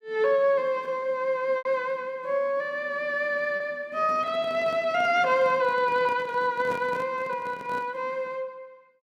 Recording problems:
packet loss; 1.8% of the sound replaced, filled with repeated pitch periods
microphone handling noise; from 4 to 8 s; peak -8 dB vs average level

